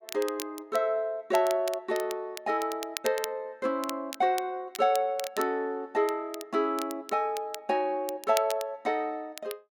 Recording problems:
crackling; vinyl, SNR 13 dB

